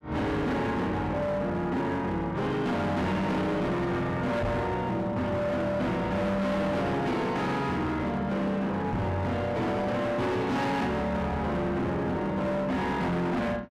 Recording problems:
distortion; hard clipping, signal-to-distortion ratio 7 dB
microphone thump; at 4.5 s and at 9 s; peak +2 dB vs average level

